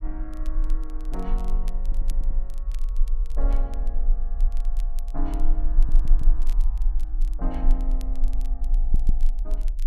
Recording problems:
rumble; below 32 Hz, strongest tone 20 Hz, SNR -13 dB
crackle; vinyl, SNR 15 dB
audio stuttering; at 2 s, at 5.5 s and at 9 s

